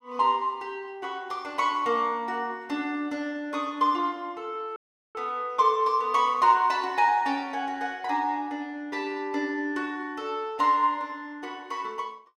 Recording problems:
dropout; at 5 s

